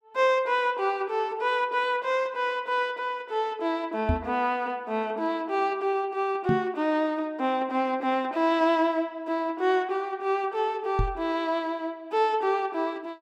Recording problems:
microphone bump; at 4 s, at 6.5 s and at 11 s; peak +4 dB vs average level

